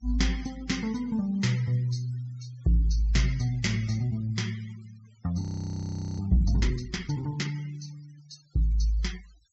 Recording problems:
low-pass filter; nothing above 7.7 kHz
noise reduction artefacts; signal-to-artefact ratio 20 dB
frozen audio; at 5.5 s for 1 s

